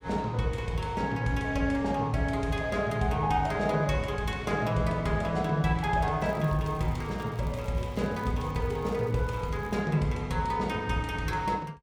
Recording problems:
crackling; from 6 to 10 s; loose cable, SNR 28 dB

